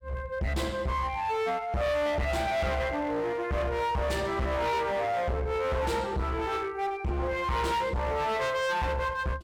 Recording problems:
distorted audio; hard clipping, uneven, signal-to-distortion ratio 6 dB

